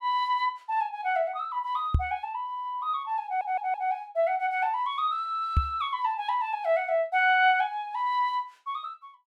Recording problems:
microphone bump; at 2 s and at 5.5 s; peak +7 dB vs average level
stutter; at 3.5 s

